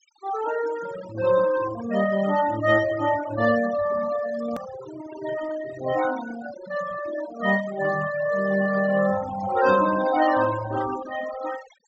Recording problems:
treble missing; nothing above 7.9 kHz
denoising artefacts; signal-to-artefact ratio 13 dB
hard cut with a click; at 4.5 s

